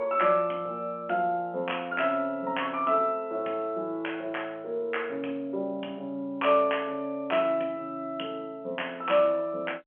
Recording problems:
phone line; 240 Hz to 3.2 kHz, G.711

